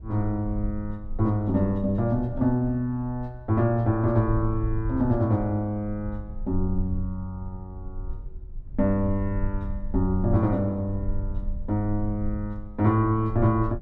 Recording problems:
low-frequency rumble; below 56 Hz, SNR 11 dB

